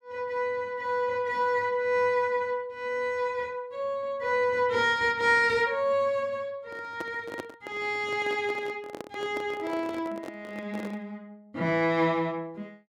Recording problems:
microphone handling noise; from 6.5 to 11 s; peak -4 dB vs average level

